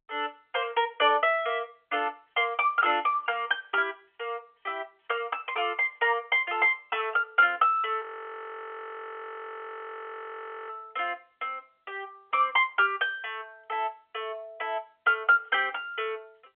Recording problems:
phone line; 320 Hz to 3.4 kHz, G.711
audio freezing; at 8 s for 2.5 s

